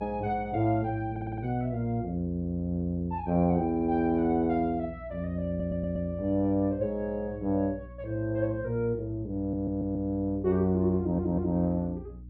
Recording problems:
low-pass filter; nothing above 8 kHz
hum; 60 Hz, harmonics up to 300 Hz, SNR 17 dB
stutter; 4 times, first at 1 s

